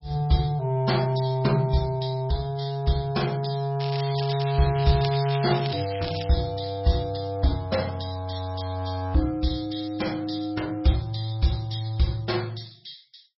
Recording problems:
lossy codec; MP3, log-spectral distance 7 dB, nothing above 5.5 kHz
crackling; from 4 to 6.5 s; loose cable, SNR 10 dB

